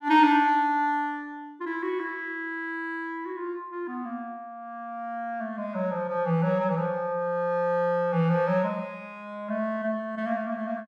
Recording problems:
none

